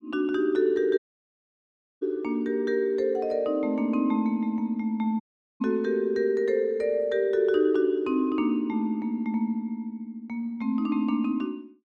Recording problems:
audio cutting out; at 1 s for 1 s and at 5 s

